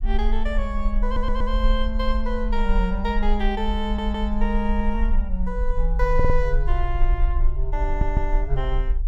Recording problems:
rumble; below 44 Hz, strongest tone 20 Hz, SNR -1 dB
audio stuttering; 4 times, first at 1 s

